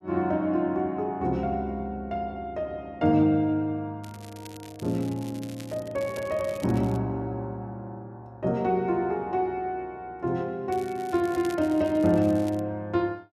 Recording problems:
crackling; from 4 to 7 s and from 11 to 13 s; loose cable, SNR 21 dB

